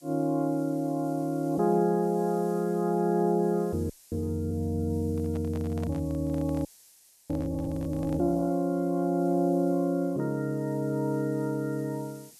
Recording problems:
hiss; SNR 26 dB
audio freezing; at 4 s and at 6.5 s for 0.5 s
handling noise; from 5 to 8 s; peak -10 dB vs average level

